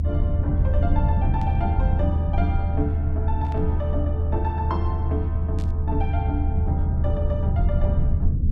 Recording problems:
low-frequency rumble; below 82 Hz, strongest tone 78 Hz, SNR -7 dB
static burst; at 1.5 s, at 3.5 s and at 5.5 s; peak -11 dB vs average level

